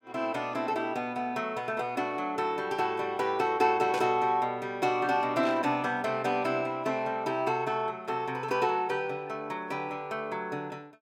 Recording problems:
burst of static; at 4 s and at 5.5 s; peak -9 dB vs average level

